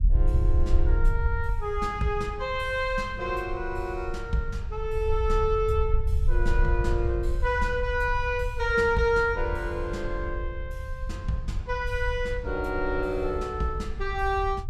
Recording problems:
low-frequency rumble; below 68 Hz, SNR 3 dB

